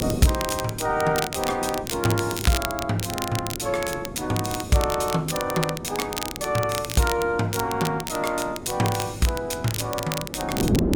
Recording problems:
wind noise; below 370 Hz, SNR 10 dB
crackle; vinyl, SNR 7 dB

